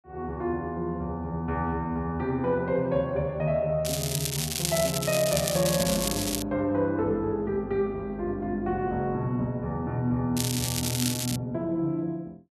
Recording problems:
crackle; from 4 to 6.5 s and from 10 to 11 s; loose cable, SNR 2 dB

